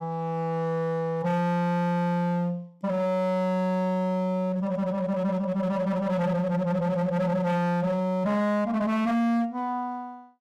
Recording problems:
distorted audio; hard clipping, uneven, signal-to-distortion ratio 7 dB

